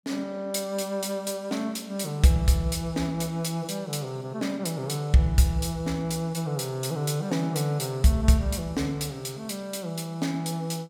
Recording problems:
none

